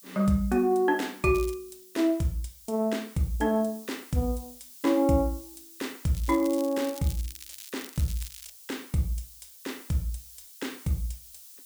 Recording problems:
hiss; SNR 19 dB
crackle; at 1.5 s and from 6 to 8.5 s; loose cable, SNR 15 dB

